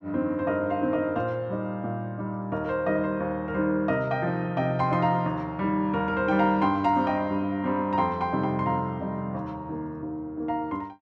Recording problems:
none

